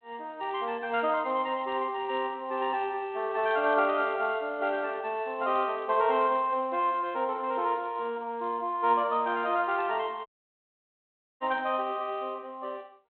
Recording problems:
phone line; 240 Hz to 3.5 kHz, G.726
audio cutting out; at 10 s for 1 s

